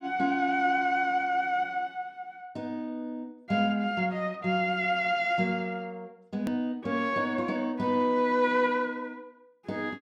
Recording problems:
edit click; at 6.5 s

